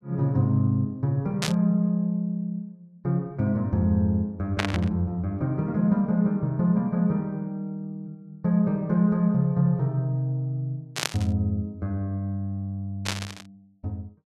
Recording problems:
burst of static; 4 times, first at 1.5 s; peak +4 dB vs average level

